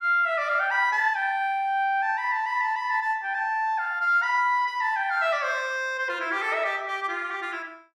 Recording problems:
none

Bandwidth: 14.5 kHz